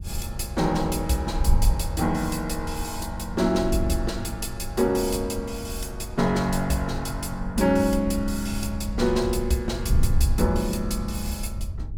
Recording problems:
wind on the microphone; below 78 Hz, SNR 5 dB

